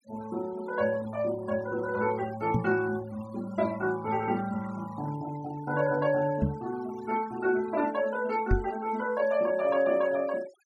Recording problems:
noise reduction artefacts; signal-to-artefact ratio 20 dB
knock on the microphone; at 2.5 s, at 6.5 s and at 8.5 s; peak +6 dB vs average level

